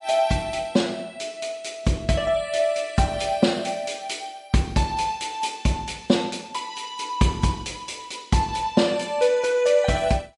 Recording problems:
lossy compression; MP3, log-spectral distance 3 dB, nothing above 11 kHz

